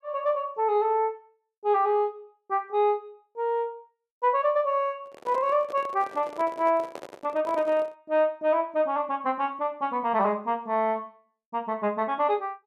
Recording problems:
handling noise; from 5 to 8 s; peak -8 dB vs average level

